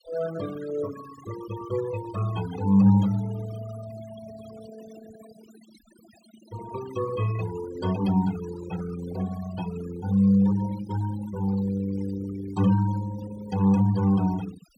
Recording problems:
denoising artefacts; signal-to-artefact ratio 16 dB

